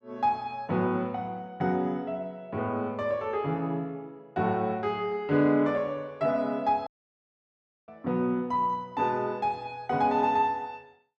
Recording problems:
dropout; at 7 s for 1 s

